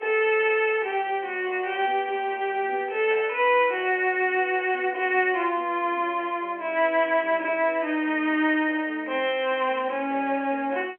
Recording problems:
telephone audio; 280 Hz to 3.3 kHz, G.711

